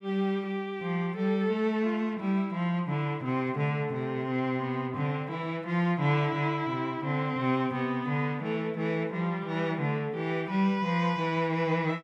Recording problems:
none

